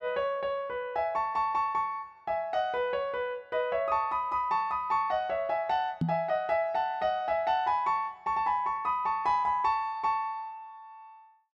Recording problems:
knock on the microphone; at 6 s; peak +3 dB vs average level

